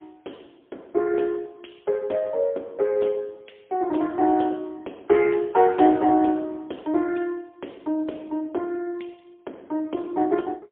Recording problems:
telephone audio; 240 Hz to 3.8 kHz, AMR-NB, then MP3

